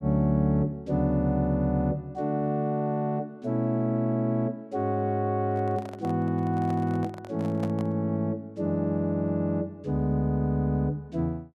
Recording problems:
handling noise; from 5.5 to 8 s; peak -8 dB vs average level

